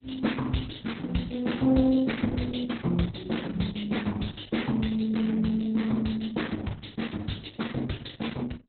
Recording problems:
lossy compression; Opus, log-spectral distance 8 dB, nothing above 4 kHz

